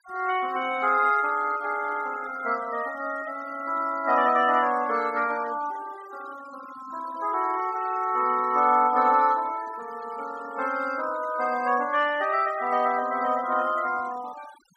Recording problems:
noise reduction artefacts; signal-to-artefact ratio 19 dB

